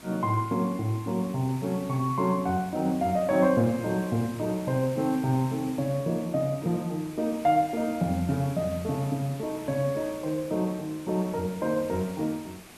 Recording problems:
background hiss; slope -3 dB per octave, SNR 18 dB

